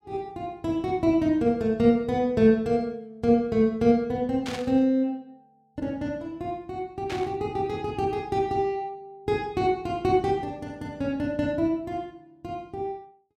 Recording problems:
burst of static; at 4.5 s and at 7 s; peak -6 dB vs average level

